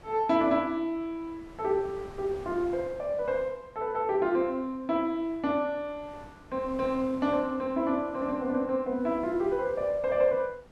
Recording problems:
wind on the microphone; below 840 Hz, SNR 21 dB

